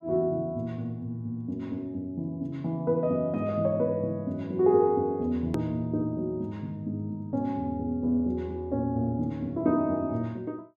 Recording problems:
edit click; at 5.5 s

